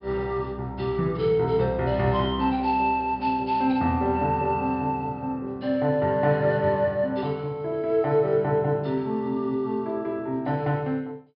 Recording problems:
treble cut off; nothing above 5.3 kHz

